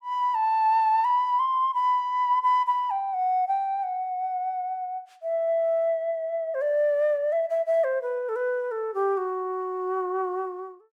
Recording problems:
none

